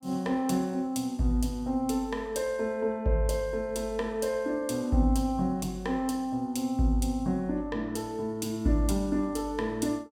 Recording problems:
none

